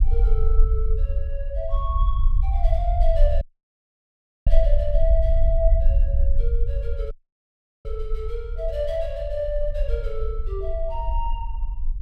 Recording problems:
rumble; below 50 Hz, SNR -5 dB
dropout; at 3.5 s for 1 s and at 7 s for 0.5 s

